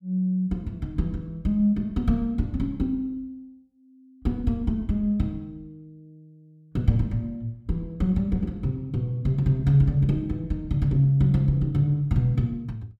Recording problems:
none

